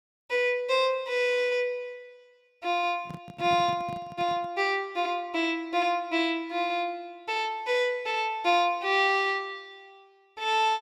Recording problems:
microphone handling noise; from 3 to 4.5 s; peak -9 dB vs average level

